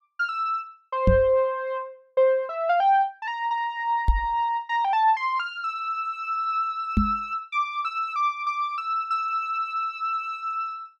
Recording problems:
microphone thump; at 1 s, at 4 s and at 7 s; peak +7 dB vs average level

